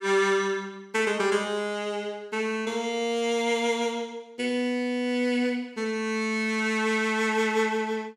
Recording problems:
none

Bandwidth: 16.5 kHz